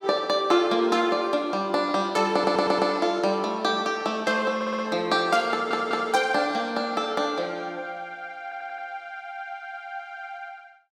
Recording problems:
audio stuttering; 4 times, first at 2.5 s

